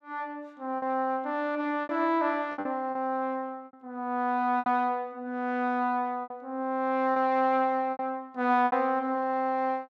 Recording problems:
packet loss; 7% of the sound replaced, filled with repeated pitch periods

